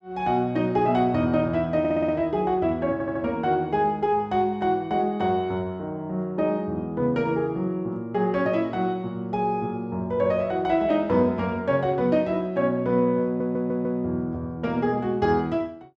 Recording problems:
stutter; at 2 s, at 3 s and at 13 s

